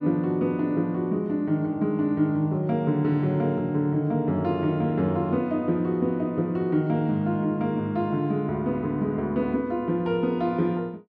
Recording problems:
none

